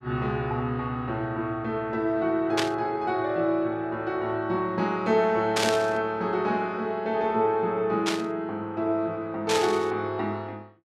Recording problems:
static burst; 4 times, first at 2.5 s; peak +5 dB vs average level

